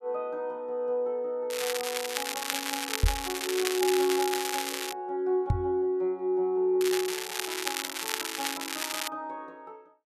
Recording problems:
crackle; from 1.5 to 5 s and from 7 to 9 s; loose cable, SNR 1 dB
microphone bump; at 3 s and at 5.5 s; peak +9 dB vs average level

